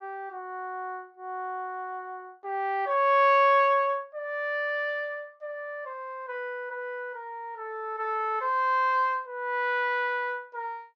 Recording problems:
none

